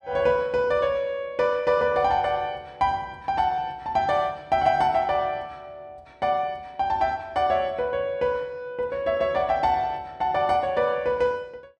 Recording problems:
none

